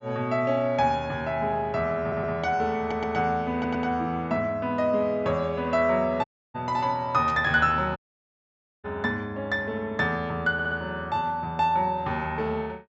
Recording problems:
treble cut off; nothing above 8 kHz
audio stuttering; 4 times, first at 2 s
audio cutting out; at 6 s and at 8 s for 1 s
burst of static; at 7.5 s; peak -12 dB vs average level

